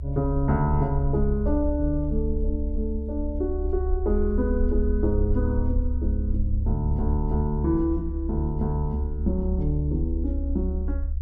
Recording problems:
low-frequency rumble; below 70 Hz, SNR 1 dB

